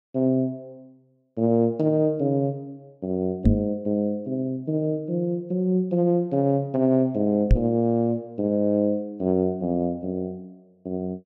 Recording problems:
knock on the microphone; at 3.5 s and at 7.5 s; peak +8 dB vs average level

